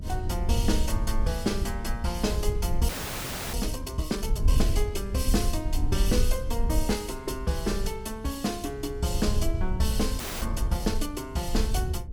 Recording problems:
electrical hum; 50 Hz, harmonics up to 500 Hz, SNR 24 dB
low-frequency rumble; below 68 Hz, SNR 1 dB
frozen audio; at 3 s for 0.5 s and at 10 s

